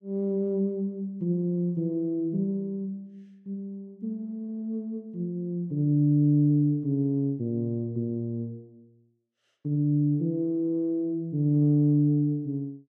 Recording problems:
none

